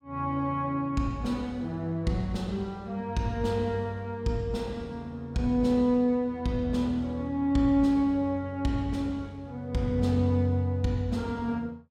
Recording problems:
none

